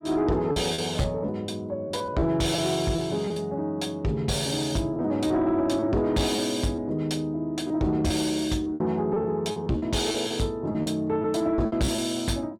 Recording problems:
distortion; soft clipping, signal-to-distortion ratio 12 dB
lost packets; 8% of the sound replaced, filled with repeated pitch periods

